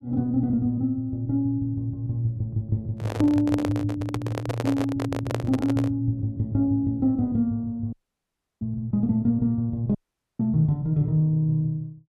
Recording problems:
handling noise; from 3 to 6 s; peak +1 dB vs average level
audio cutting out; at 8 s for 0.5 s and at 10 s

